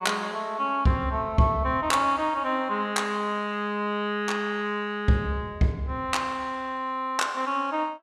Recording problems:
none

